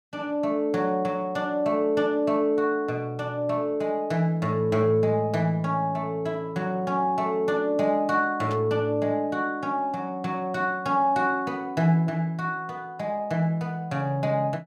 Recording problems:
static burst; at 8.5 s; peak -12 dB vs average level

